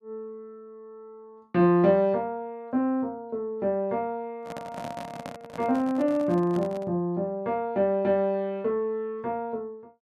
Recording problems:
handling noise; from 4.5 to 7 s; peak -8 dB vs average level

